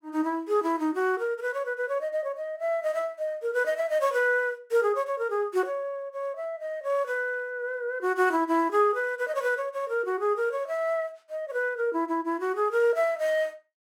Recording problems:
none

